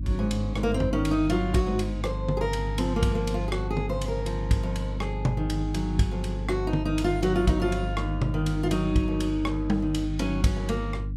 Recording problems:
hum; 50 Hz, harmonics up to 300 Hz, SNR 4 dB

